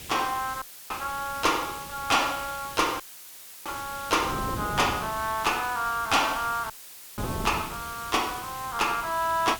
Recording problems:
distorted audio; soft clipping, signal-to-distortion ratio 10 dB
background hiss; slope +2 dB per octave, SNR 12 dB
wind on the microphone; below 400 Hz, SNR 14 dB
dropout; at 0.5 s, at 3 s for 0.5 s and at 6.5 s; filled with static

